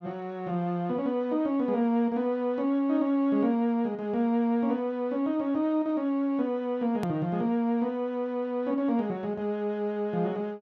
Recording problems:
click at an edit; at 7 s

